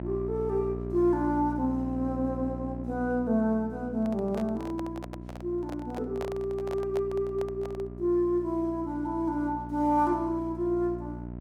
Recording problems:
hum; 60 Hz, harmonics up to 1 kHz, SNR 10 dB
microphone handling noise; from 4 to 8 s; peak -5 dB vs average level

